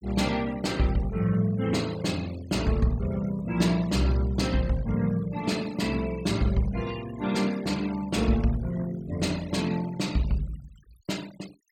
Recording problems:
noise reduction artefacts; signal-to-artefact ratio 19 dB

